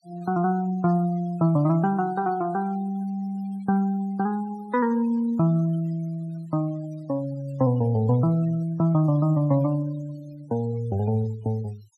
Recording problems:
denoising artefacts; signal-to-artefact ratio 26 dB

